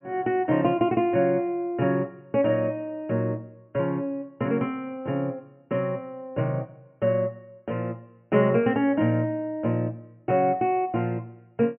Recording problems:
low-pass filter; nothing above 3.1 kHz

